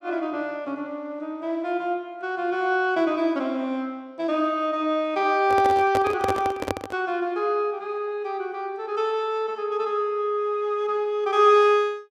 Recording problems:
handling noise; from 5.5 to 7 s; peak +2 dB vs average level

